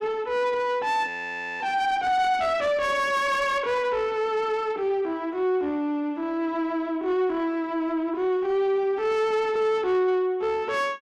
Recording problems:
distortion; soft clipping, signal-to-distortion ratio 11 dB
frozen audio; at 1 s for 0.5 s

